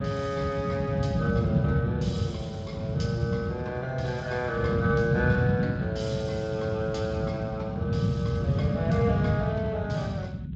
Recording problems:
codec artefacts; Speex, log-spectral distance 2 dB, nothing above 7.6 kHz
low-frequency rumble; below 200 Hz, SNR -2 dB

